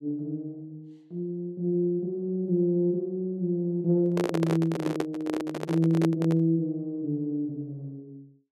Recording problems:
microphone handling noise; from 4 to 6.5 s; peak +2 dB vs average level

